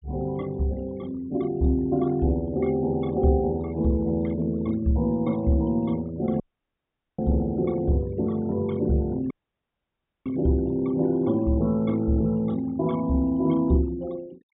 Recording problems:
treble missing; nothing above 4 kHz
denoising artefacts; signal-to-artefact ratio 24 dB
audio cutting out; at 6.5 s for 1 s and at 9.5 s for 1 s

